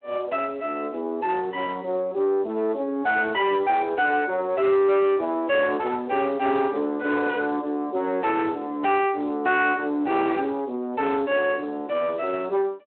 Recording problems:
phone line; 240 Hz to 3.3 kHz, Speex
distorted audio; soft clipping, signal-to-distortion ratio 11 dB

